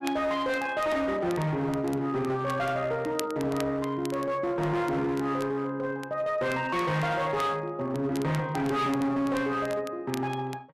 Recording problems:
distorted audio; hard clipping, signal-to-distortion ratio 11 dB
crackling; vinyl, SNR 19 dB

